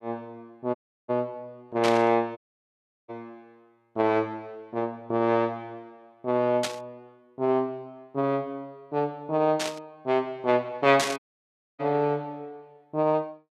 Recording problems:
audio cutting out; at 1 s, at 2.5 s for 0.5 s and at 11 s for 0.5 s
static burst; 4 times, first at 2 s; peak +3 dB vs average level

